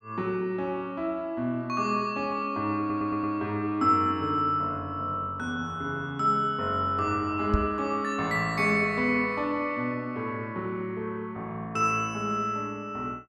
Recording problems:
stutter; at 3 s
knock on the microphone; at 7.5 s; peak +5 dB vs average level

